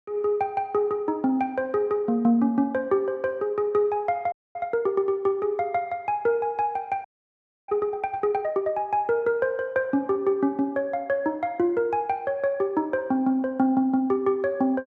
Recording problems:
audio freezing; at 4.5 s and at 7 s for 0.5 s

